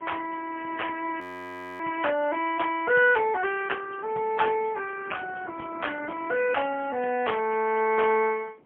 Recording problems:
phone line; 220 Hz to 3.2 kHz, AMR-NB, then MP3
wind on the microphone; below 600 Hz, SNR 20 dB
frozen audio; at 1 s for 0.5 s

